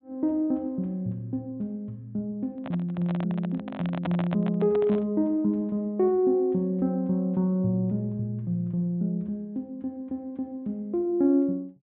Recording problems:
treble missing; nothing above 4 kHz
microphone handling noise; from 2.5 to 5 s; peak -1 dB vs average level

